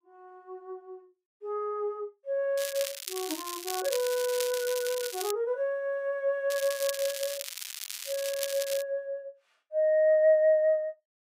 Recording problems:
crackling; from 2.5 to 5.5 s and from 6.5 to 9 s; loose cable, SNR 7 dB

